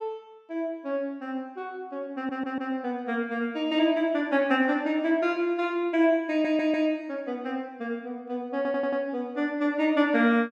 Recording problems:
stutter; at 2 s, at 6.5 s and at 8.5 s

